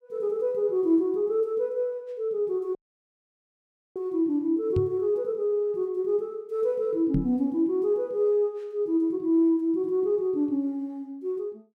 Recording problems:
dropout; at 3 s for 1 s
knock on the microphone; at 5 s and at 7 s; peak +3 dB vs average level

